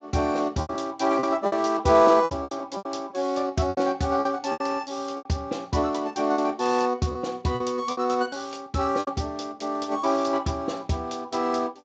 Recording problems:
lossy codec; Speex, log-spectral distance 4 dB
packet loss; 9% of the sound replaced, filled with repeated pitch periods

